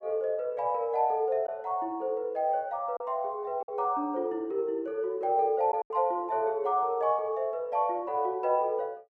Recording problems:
packet loss; 2% of the sound replaced, filled with silence

